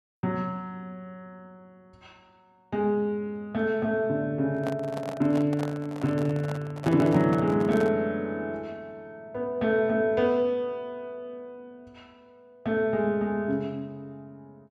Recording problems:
microphone handling noise; from 4.5 to 8 s; peak -2 dB vs average level

